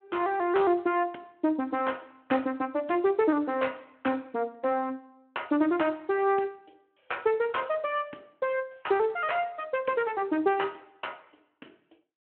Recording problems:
telephone audio; 260 Hz to 3.2 kHz, Speex

